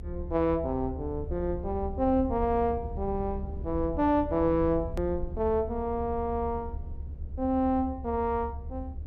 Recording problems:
low-frequency rumble; below 78 Hz, SNR 9 dB
hard cut with a click; at 5 s

